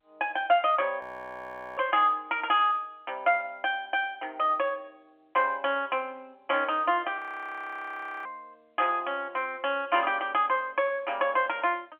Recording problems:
telephone audio; 240 Hz to 3.3 kHz, G.711
frozen audio; at 1 s for 1 s and at 7 s for 1 s

